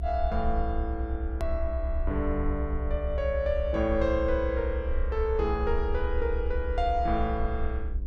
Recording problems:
electrical hum; 50 Hz, harmonics up to 1 kHz, SNR 19 dB
low-frequency rumble; below 68 Hz, SNR 2 dB
edit click; at 1.5 s

